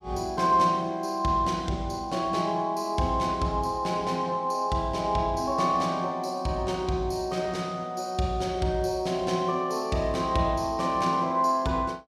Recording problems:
none

